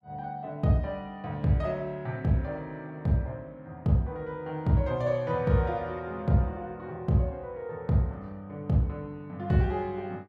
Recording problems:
none

